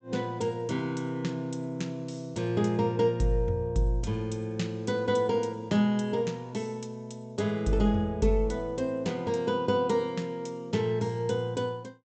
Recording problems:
low-pass filter; nothing above 8 kHz

